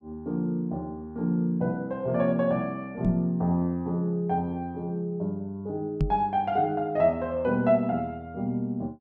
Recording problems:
microphone thump; at 3 s and at 6 s; peak +5 dB vs average level

